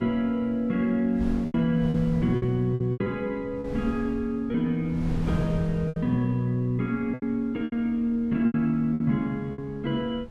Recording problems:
wind on the microphone; below 200 Hz, SNR 13 dB
packet loss; 8% of the sound replaced, filled with repeated pitch periods

